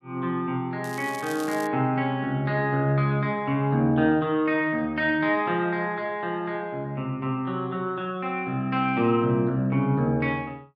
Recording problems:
crackle; at 1 s; loose cable, SNR 18 dB

